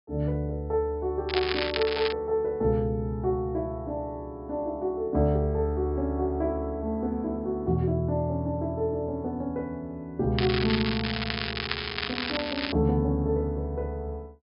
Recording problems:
treble cut off; nothing above 5.5 kHz
crackling; at 1.5 s and from 10 to 13 s; loose cable, SNR 3 dB

